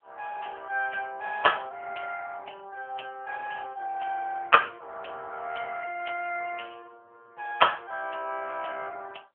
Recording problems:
phone line; 370 Hz to 3.3 kHz, AMR-NB

